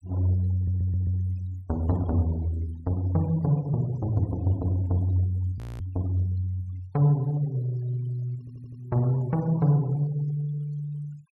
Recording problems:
noise reduction artefacts; signal-to-artefact ratio 26 dB
stutter; at 0.5 s and at 8.5 s
audio freezing; at 5.5 s

